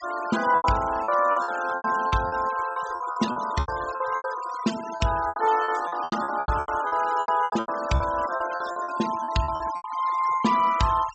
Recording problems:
treble cut off; nothing above 8 kHz
denoising artefacts; signal-to-artefact ratio 14 dB
lost packets; 17% of the sound replaced, filled with repeated pitch periods

